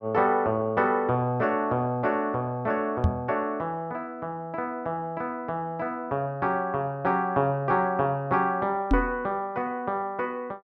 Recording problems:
microphone bump; at 3 s and at 9 s; peak +7 dB vs average level

